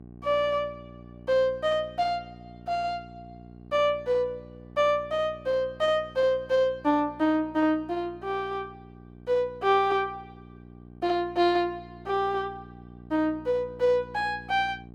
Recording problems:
electrical hum; 60 Hz, harmonics up to 840 Hz, SNR 20 dB

